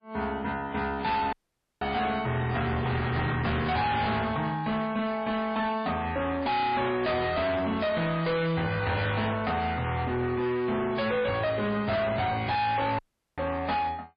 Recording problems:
codec artefacts; MP3, log-spectral distance 3 dB, nothing above 4.6 kHz
distortion; hard clipping, signal-to-distortion ratio 7 dB
audio cutting out; at 1.5 s and at 13 s

